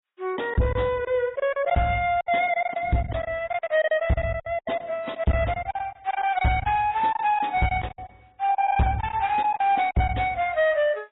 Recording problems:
lossy codec; AAC, log-spectral distance 2 dB, nothing above 3.8 kHz
distortion; soft clipping, signal-to-distortion ratio 11 dB
lost packets; 13% of the sound replaced, filled with silence

